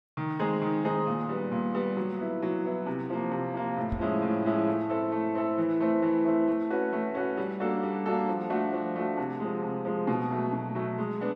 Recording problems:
microphone thump; at 4 s; peak -2 dB vs average level

